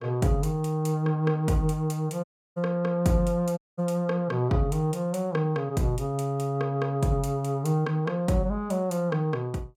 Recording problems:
dropout; at 2 s and at 3.5 s

